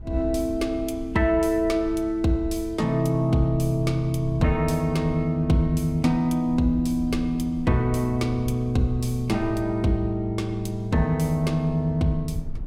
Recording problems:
wind noise; below 94 Hz, SNR 15 dB

